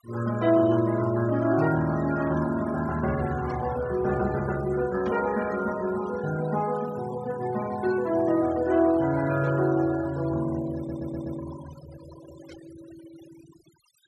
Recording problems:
denoising artefacts; signal-to-artefact ratio 17 dB
burst of static; 5 times, first at 1.5 s; peak -16 dB vs average level
audio stuttering; at 11 s

